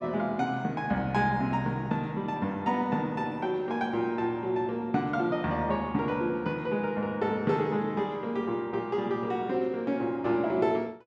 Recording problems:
none

